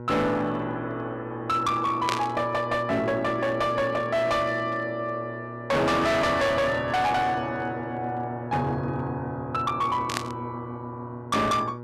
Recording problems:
distorted audio; hard clipping, signal-to-distortion ratio 7 dB
electrical hum; 60 Hz, harmonics up to 1.6 kHz, SNR 12 dB
static burst; at 2 s and at 10 s; peak +2 dB vs average level

